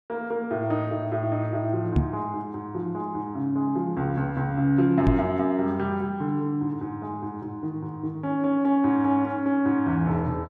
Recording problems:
microphone bump; at 2 s and at 5 s; peak +7 dB vs average level

